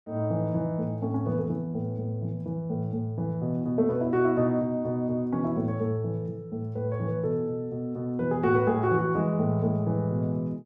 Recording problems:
none

